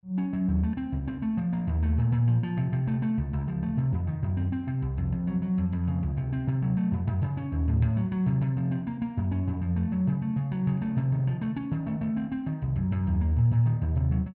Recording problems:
none

